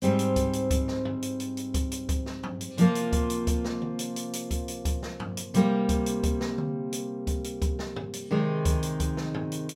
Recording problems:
none

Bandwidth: 16.5 kHz